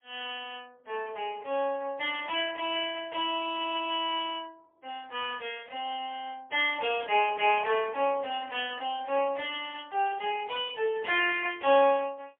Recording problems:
telephone audio; 300 Hz to 3.4 kHz, AMR-NB, then MP3

